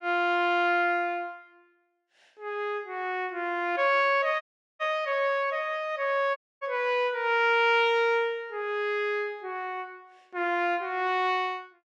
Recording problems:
audio cutting out; at 4.5 s and at 6.5 s

